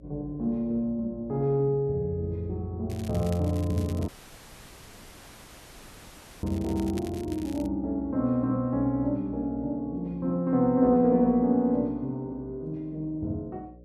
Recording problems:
hum; 60 Hz, harmonics up to 600 Hz, SNR 25 dB
crackle; from 3 to 7.5 s; loose cable, SNR 21 dB
dropout; at 4 s for 2.5 s

